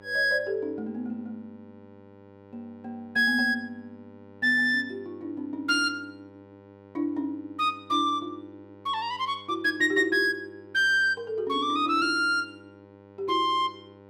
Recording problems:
mains hum; 50 Hz, harmonics up to 2 kHz, SNR 25 dB

